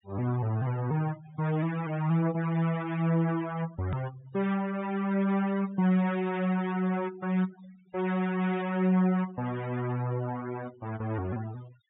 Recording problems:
treble missing; nothing above 4 kHz
denoising artefacts; signal-to-artefact ratio 19 dB
click at an edit; at 4 s

